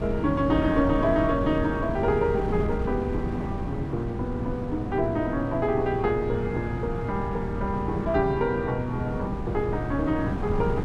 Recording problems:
wind on the microphone; below 260 Hz, SNR 5 dB

